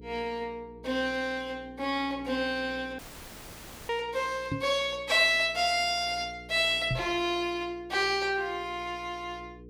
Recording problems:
hum; 60 Hz, harmonics up to 480 Hz, SNR 22 dB
audio cutting out; at 3 s for 1 s
microphone bump; at 4.5 s and at 7 s; peak 0 dB vs average level

